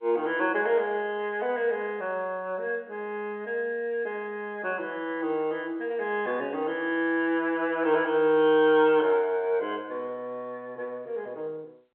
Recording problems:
phone line; 240 Hz to 3.2 kHz, G.711

